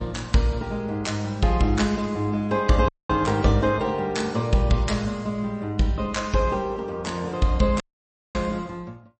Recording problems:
lossy codec; MP3, log-spectral distance 2 dB, nothing above 8.2 kHz
dropout; at 3 s and at 8 s for 0.5 s

